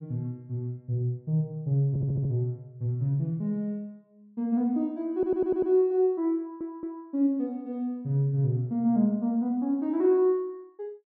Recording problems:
audio stuttering; at 2 s, at 5 s and at 6.5 s

